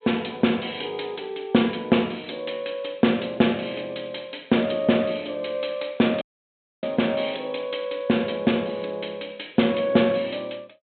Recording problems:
treble missing; nothing above 4 kHz
dropout; at 6 s for 0.5 s

